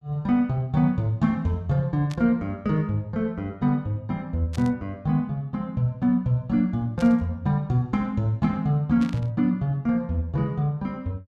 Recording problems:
static burst; 4 times, first at 2 s; peak -12 dB vs average level

